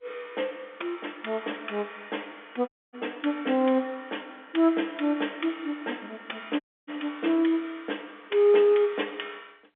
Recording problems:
telephone audio; 260 Hz to 3.6 kHz, G.711
audio cutting out; at 2.5 s and at 6.5 s

